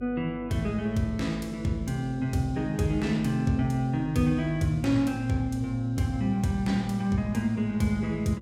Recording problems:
hum; 50 Hz, harmonics up to 600 Hz, SNR 19 dB

